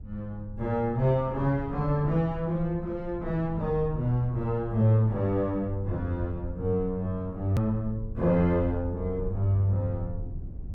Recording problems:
low-frequency rumble; below 94 Hz, SNR 13 dB
click at an edit; at 7.5 s

